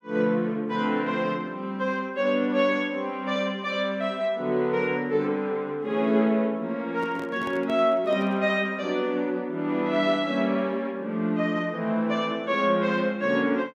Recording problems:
microphone handling noise; from 7 to 8.5 s; peak -9 dB vs average level

